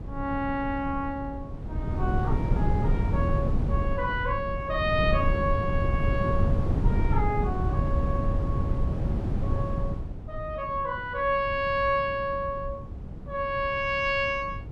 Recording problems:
wind noise; below 150 Hz, SNR 0 dB

